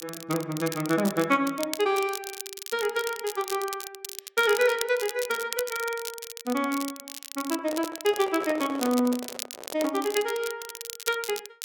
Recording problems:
crackling; vinyl, SNR 9 dB
microphone handling noise; from 7.5 to 10 s; peak -6 dB vs average level

